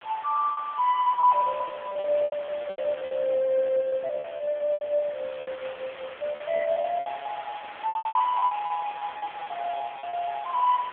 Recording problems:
phone line; 340 Hz to 2.6 kHz, AMR-NB
background hiss; SNR 15 dB
lost packets; 18% of the sound replaced, filled with repeated pitch periods
crackle; at 2.5 s and from 8 to 10 s; loose cable, SNR 27 dB

